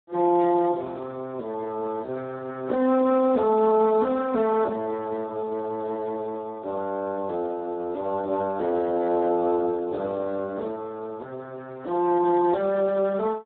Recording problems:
phone line; 240 Hz to 2 kHz, Speex

